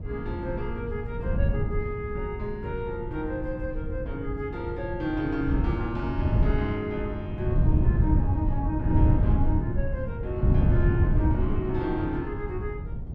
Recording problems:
wind noise; below 130 Hz, SNR -4 dB

